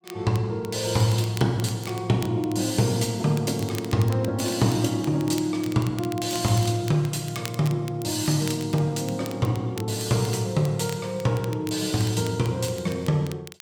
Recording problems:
crackling; vinyl, SNR 18 dB

